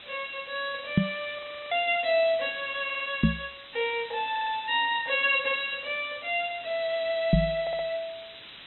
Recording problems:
treble cut off; nothing above 4 kHz
background hiss; SNR 15 dB
knock on the microphone; at 1 s, at 3 s and at 7.5 s; peak +10 dB vs average level
audio freezing; at 1.5 s
audio stuttering; at 3 s, at 4.5 s and at 7.5 s

